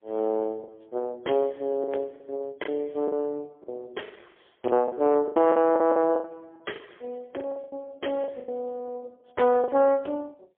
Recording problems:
telephone audio; 300 Hz to 3.3 kHz, AMR-NB, then MP3
packet loss; 11% of the sound replaced, filled with the last packet

